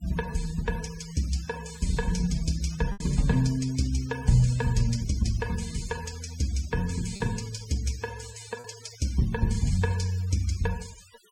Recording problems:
noise reduction artefacts; signal-to-artefact ratio 17 dB
packet loss; 1.5% of the sound replaced, filled with repeated pitch periods

